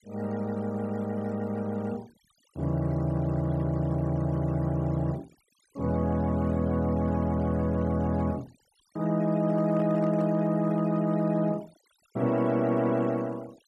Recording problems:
denoising artefacts; signal-to-artefact ratio 25 dB
handling noise; from 9.5 to 11 s; peak -10 dB vs average level

